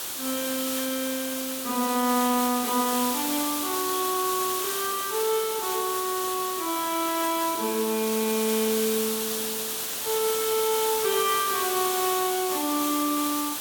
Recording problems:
background hiss; SNR 1 dB

